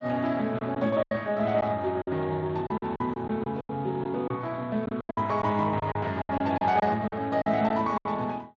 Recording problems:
codec artefacts; Speex, log-spectral distance 3 dB
lost packets; 11% of the sound replaced, filled with silence

